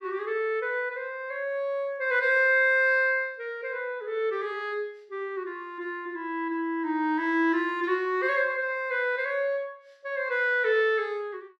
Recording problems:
none

